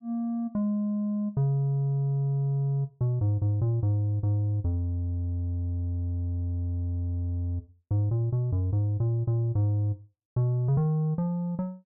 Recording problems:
none

